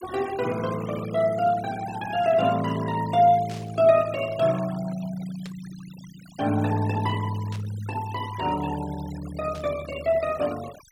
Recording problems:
noise reduction artefacts; signal-to-artefact ratio 18 dB
static burst; 4 times, first at 3.5 s; peak -13 dB vs average level

